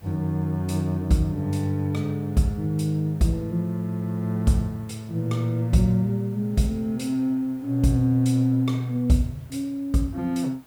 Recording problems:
hiss; slope -5 dB per octave, SNR 29 dB

